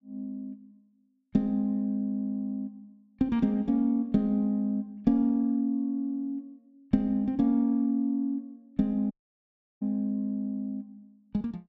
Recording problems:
audio cutting out; at 9 s for 0.5 s

